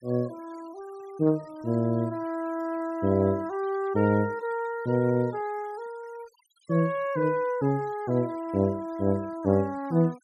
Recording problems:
denoising artefacts; signal-to-artefact ratio 26 dB

